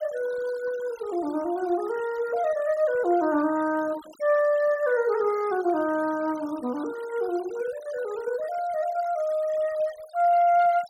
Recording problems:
denoising artefacts; signal-to-artefact ratio 21 dB

